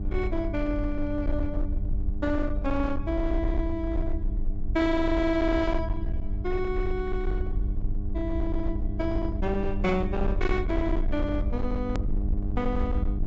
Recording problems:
treble missing; nothing above 8 kHz
distorted audio; hard clipping, signal-to-distortion ratio 12 dB
electrical hum; 50 Hz, harmonics up to 800 Hz, SNR 8 dB
low-frequency rumble; below 60 Hz, SNR 3 dB
click at an edit; at 12 s

